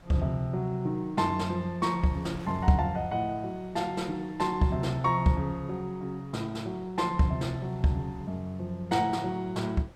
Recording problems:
wind on the microphone; below 850 Hz, SNR 23 dB

